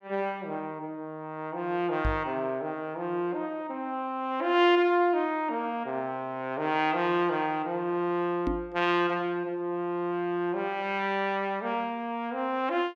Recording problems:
microphone bump; at 2 s and at 8.5 s; peak +2 dB vs average level

